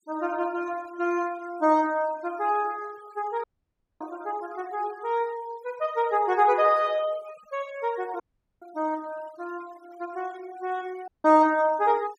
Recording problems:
denoising artefacts; signal-to-artefact ratio 25 dB
dropout; at 3.5 s for 0.5 s, at 8 s and at 11 s

